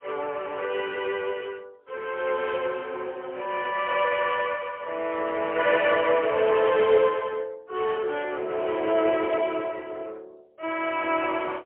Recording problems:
telephone audio; 340 Hz to 3.3 kHz, AMR-NB, then MP3

